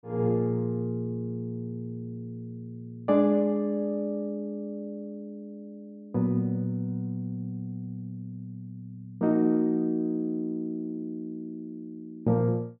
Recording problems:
none

